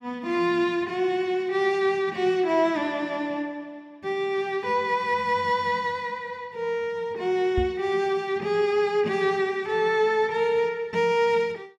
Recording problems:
knock on the microphone; at 7.5 s; peak 0 dB vs average level

